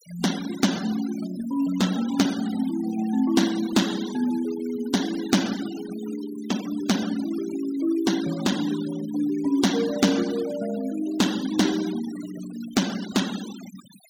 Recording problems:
denoising artefacts; signal-to-artefact ratio 14 dB

